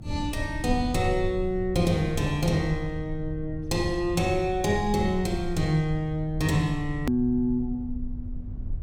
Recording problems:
rumble; below 84 Hz, strongest tone 22 Hz, SNR 10 dB
click at an edit; at 7 s

